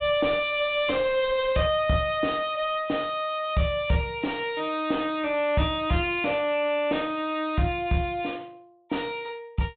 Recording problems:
low-pass filter; nothing above 4 kHz
distorted audio; soft clipping, signal-to-distortion ratio 9 dB

